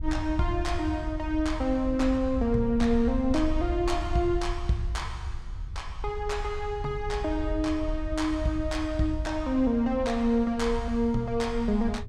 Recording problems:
wind on the microphone; below 68 Hz, SNR 8 dB

